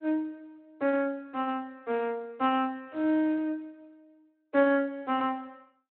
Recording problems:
telephone audio; 260 Hz to 3.1 kHz, Speex

